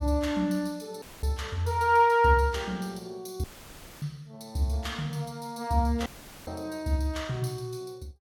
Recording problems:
dropout; at 1 s, at 3.5 s for 0.5 s and at 6 s; filled with static

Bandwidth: 17.5 kHz